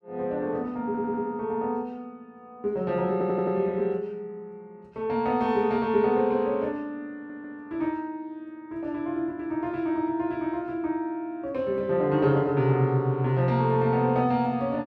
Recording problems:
audio stuttering; at 1 s, at 3 s and at 7 s

